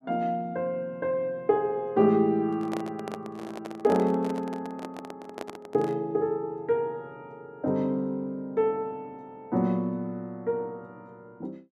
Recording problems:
microphone handling noise; from 2.5 to 6 s; peak -4 dB vs average level

